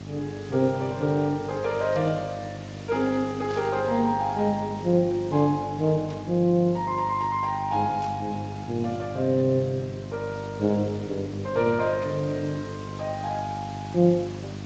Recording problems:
lossy codec; Speex, log-spectral distance 4 dB
hum; 50 Hz, harmonics up to 750 Hz, SNR 12 dB
background hiss; slope -2 dB per octave, SNR 20 dB
static burst; 5 times, first at 2 s; peak -14 dB vs average level

